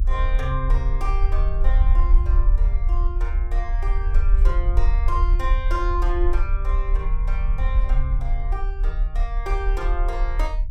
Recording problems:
rumble; below 46 Hz, strongest tone 32 Hz, SNR -8 dB

